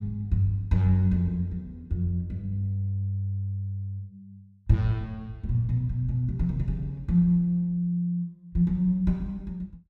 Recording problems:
none

